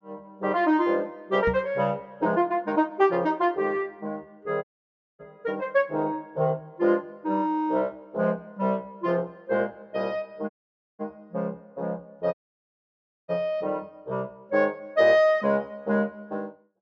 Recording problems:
treble missing; nothing above 8 kHz
microphone thump; at 1.5 s; peak -1 dB vs average level
dropout; at 4.5 s for 0.5 s, at 11 s and at 12 s for 1 s

